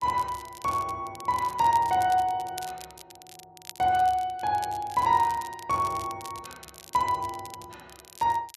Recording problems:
crackle; vinyl, SNR 19 dB

